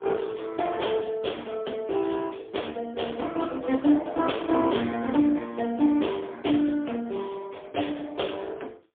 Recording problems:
phone line; 220 Hz to 3.4 kHz, AMR-NB, then MP3

